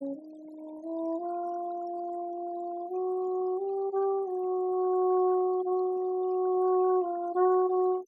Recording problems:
denoising artefacts; signal-to-artefact ratio 22 dB

